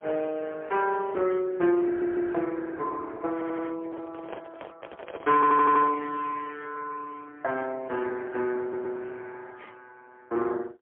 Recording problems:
phone line; 260 Hz to 2.7 kHz, AMR-NB, then MP3
stutter; 4 times, first at 2 s
microphone handling noise; from 3.5 to 6 s; peak -6 dB vs average level

